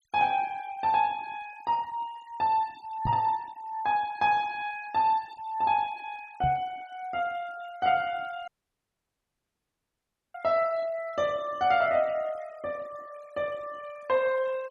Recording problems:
noise reduction artefacts; signal-to-artefact ratio 24 dB
microphone thump; at 3 s and at 6.5 s; peak 0 dB vs average level
audio cutting out; at 8.5 s for 2 s

